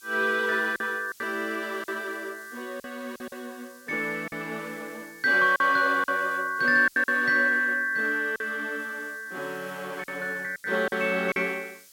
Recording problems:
hiss; SNR 25 dB
packet loss; 7% of the sound replaced, filled with silence

